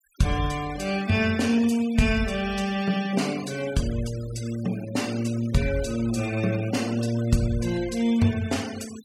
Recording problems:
denoising artefacts; signal-to-artefact ratio 16 dB

